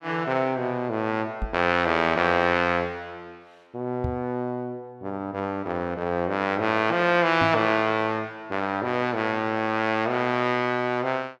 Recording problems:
microphone thump; at 1.5 s, at 4 s and at 7.5 s; peak -2 dB vs average level

